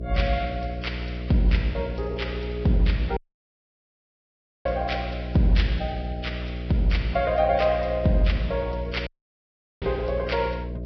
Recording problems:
lossy compression; Vorbis, log-spectral distance 3 dB, nothing above 5.3 kHz
electrical hum; 60 Hz, harmonics up to 660 Hz, SNR 7 dB
audio cutting out; at 3 s for 1.5 s and at 9 s for 1 s

